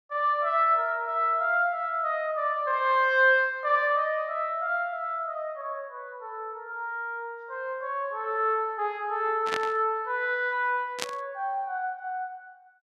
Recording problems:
static burst; at 9.5 s and at 11 s; peak +1 dB vs average level

